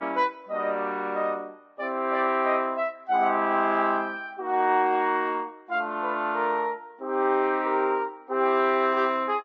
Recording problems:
lossy compression; Vorbis, log-spectral distance 2 dB

